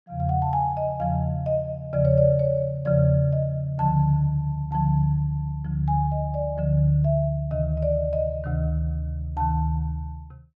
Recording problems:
none

